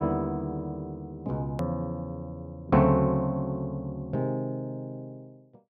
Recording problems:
edit click; at 1.5 s

